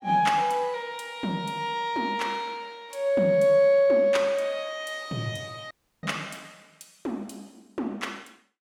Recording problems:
audio cutting out; at 5.5 s

